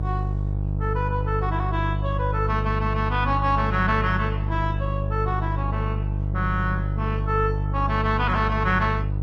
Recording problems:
lossy compression; Opus, log-spectral distance 2 dB
hum; 50 Hz, harmonics up to 650 Hz, SNR 0 dB

